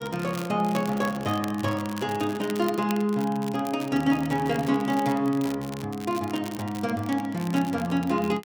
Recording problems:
crackling; vinyl, SNR 17 dB

